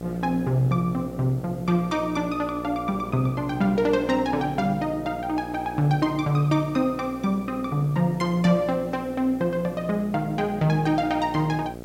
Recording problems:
mains hum; 60 Hz, harmonics up to 1.4 kHz, SNR 13 dB
background hiss; slope -1 dB per octave, SNR 29 dB

